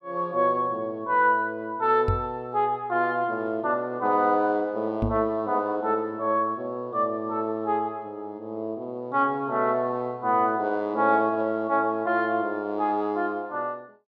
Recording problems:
microphone bump; at 2 s and at 5 s; peak +2 dB vs average level

